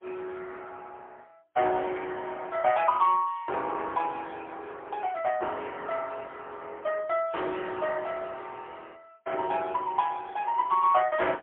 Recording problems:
phone line; 300 Hz to 3.3 kHz, AMR-NB, then MP3

